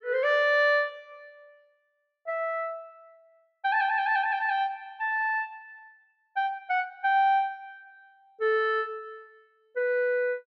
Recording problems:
none

